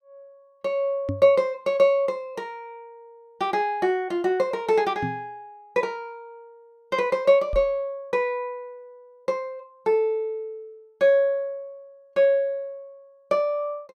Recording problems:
microphone bump; at 1 s, at 5 s and at 7.5 s; peak -1 dB vs average level

